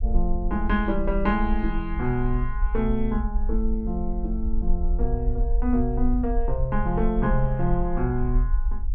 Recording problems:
low-frequency rumble; below 48 Hz, strongest tone 22 Hz, SNR 2 dB

